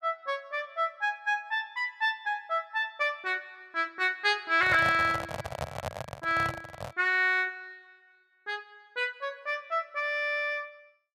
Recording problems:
microphone handling noise; from 4.5 to 7 s; peak -1 dB vs average level

